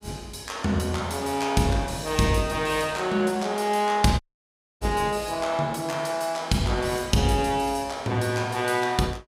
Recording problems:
audio cutting out; at 4 s for 0.5 s

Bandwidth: 15.5 kHz